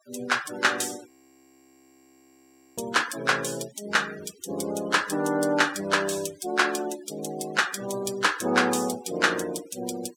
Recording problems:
denoising artefacts; signal-to-artefact ratio 17 dB
frozen audio; at 1 s for 1.5 s

